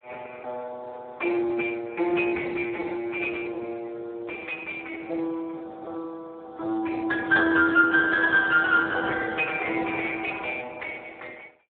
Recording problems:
telephone audio; 260 Hz to 2.2 kHz, Speex

